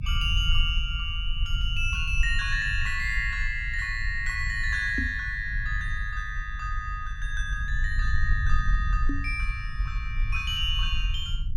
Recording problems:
low-frequency rumble; below 58 Hz, SNR 2 dB
knock on the microphone; at 5 s and at 9 s; peak +3 dB vs average level

